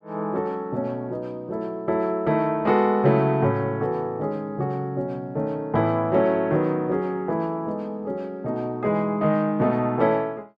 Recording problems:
none

